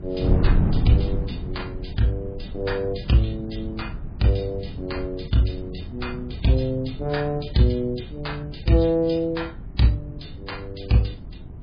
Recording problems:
lossy compression; MP3, log-spectral distance 4 dB, nothing above 5 kHz
wind on the microphone; below 150 Hz, SNR 7 dB

